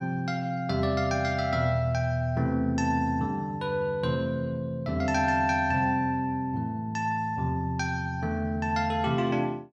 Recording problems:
none

